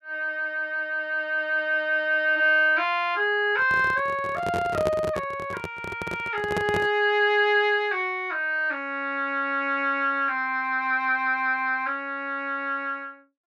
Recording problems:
handling noise; from 3.5 to 7 s; peak -1 dB vs average level

